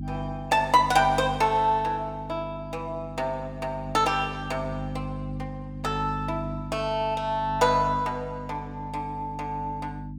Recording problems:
hum; 50 Hz, harmonics up to 300 Hz, SNR 10 dB

